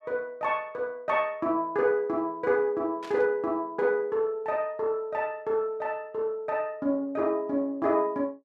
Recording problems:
static burst; at 3 s; peak -12 dB vs average level

